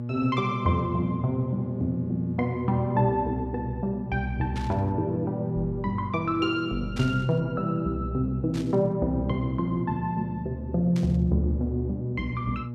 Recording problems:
hum; 60 Hz, harmonics up to 840 Hz, SNR 9 dB
burst of static; 4 times, first at 4.5 s; peak -9 dB vs average level

